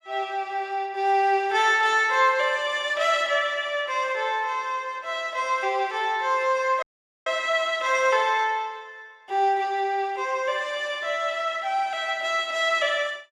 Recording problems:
dropout; at 7 s

